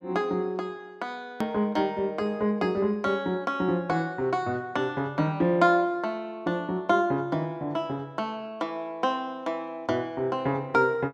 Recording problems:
edit click; at 1.5 s

